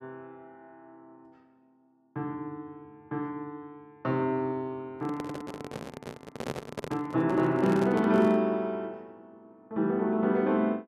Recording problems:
microphone handling noise; from 5 to 8.5 s; peak -1 dB vs average level

